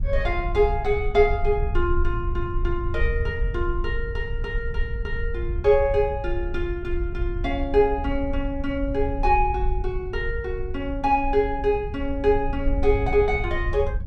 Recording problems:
rumble; below 66 Hz, SNR 5 dB

